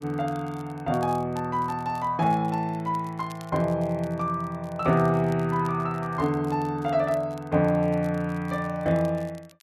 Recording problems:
crackling; vinyl, SNR 27 dB

